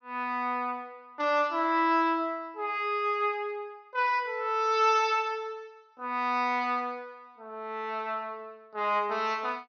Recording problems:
treble missing; nothing above 6.3 kHz

